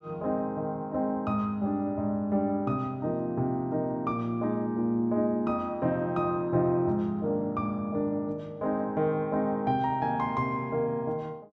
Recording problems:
none

